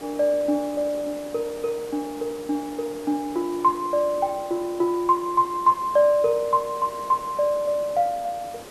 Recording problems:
background hiss; slope -5 dB per octave, SNR 18 dB

